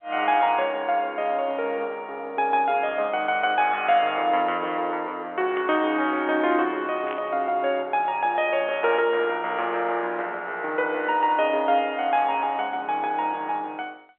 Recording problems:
phone line; 320 Hz to 3.3 kHz, G.711
static burst; at 5.5 s and at 7 s; peak -8 dB vs average level

